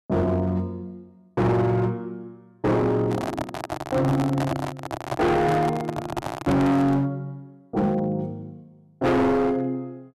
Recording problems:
distortion; hard clipping, signal-to-distortion ratio 6 dB
microphone handling noise; from 3 to 7 s; peak +1 dB vs average level

